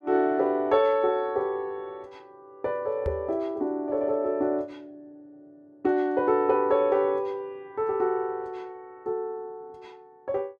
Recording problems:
microphone thump; at 3 s; peak -3 dB vs average level

